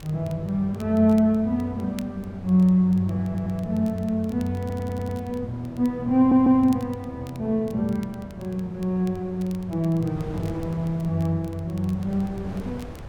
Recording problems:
wind on the microphone; below 440 Hz, SNR 19 dB
crackling; vinyl, SNR 28 dB
stutter; at 3 s, at 4.5 s and at 6 s

